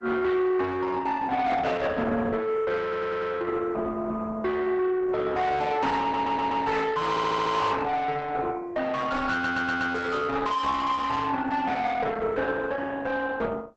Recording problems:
codec artefacts; Opus, log-spectral distance 3 dB, nothing above 7.8 kHz
distorted audio; soft clipping, signal-to-distortion ratio 8 dB
stutter; 4 times, first at 3 s

